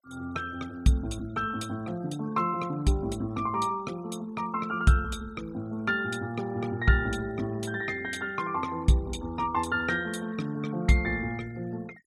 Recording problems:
denoising artefacts; signal-to-artefact ratio 23 dB

